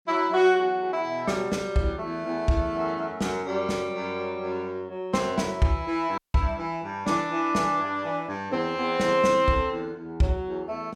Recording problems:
audio cutting out; at 6 s

